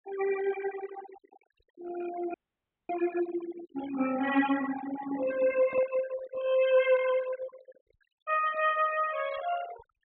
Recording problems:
treble missing; nothing above 4 kHz
noise reduction artefacts; signal-to-artefact ratio 13 dB
audio freezing; at 2.5 s for 0.5 s
microphone handling noise; from 5 to 6.5 s; peak -8 dB vs average level

